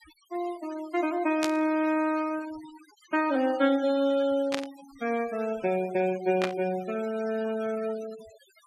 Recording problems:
denoising artefacts; signal-to-artefact ratio 19 dB
static burst; at 1.5 s, at 4.5 s and at 6.5 s; peak +2 dB vs average level

